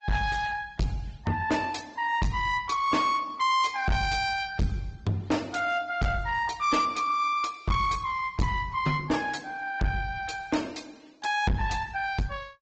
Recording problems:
low-pass filter; nothing above 7.6 kHz
codec artefacts; Opus, then Opus, log-spectral distance 4 dB
distorted audio; soft clipping, signal-to-distortion ratio 6 dB

